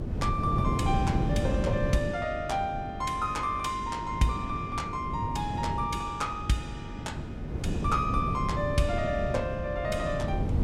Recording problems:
hum; 50 Hz, harmonics up to 450 Hz, SNR 14 dB
wind noise; below 230 Hz, SNR 2 dB

